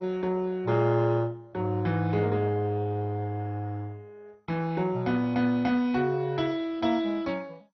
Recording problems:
codec artefacts; MP2, log-spectral distance 2 dB, nothing above 5.3 kHz

